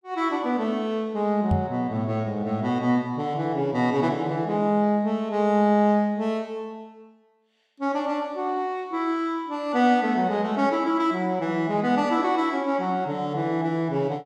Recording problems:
knock on the microphone; at 1.5 s; peak +4 dB vs average level

